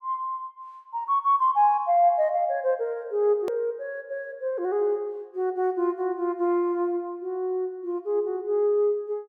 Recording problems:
hard cut with a click; at 3.5 s

